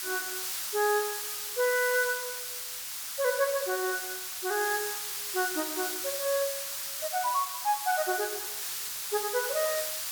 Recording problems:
background hiss; SNR 2 dB

